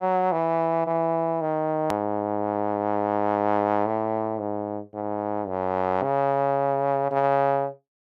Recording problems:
edit click; at 2 s

